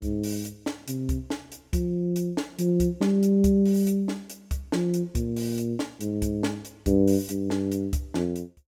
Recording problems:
none

